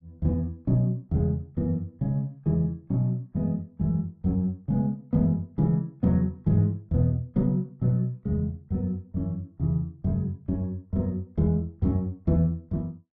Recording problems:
none

